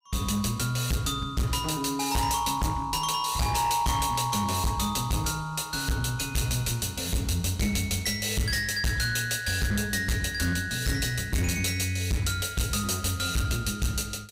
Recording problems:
distortion; hard clipping, signal-to-distortion ratio 7 dB

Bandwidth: 15.5 kHz